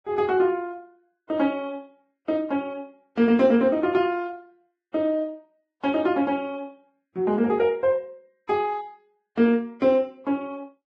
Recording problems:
lossy codec; Vorbis, log-spectral distance 2 dB

